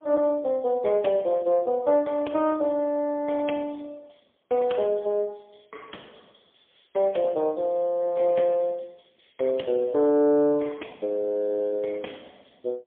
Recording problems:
telephone audio; 190 Hz to 3.4 kHz, AMR-NB, then MP3

